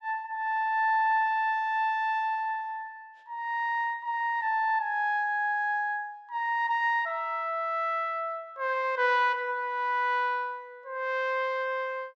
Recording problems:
none

